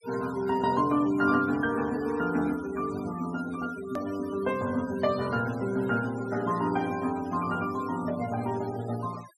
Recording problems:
noise reduction artefacts; signal-to-artefact ratio 18 dB
hard cut with a click; at 4 s

